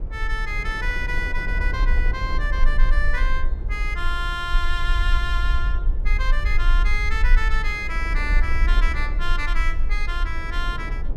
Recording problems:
low-frequency rumble; below 44 Hz, strongest tone 22 Hz, SNR -2 dB
wind on the microphone; below 370 Hz, SNR 11 dB

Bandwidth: 14.5 kHz